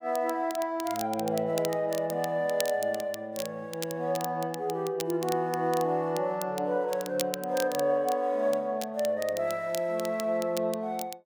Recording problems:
crackling; vinyl, SNR 12 dB

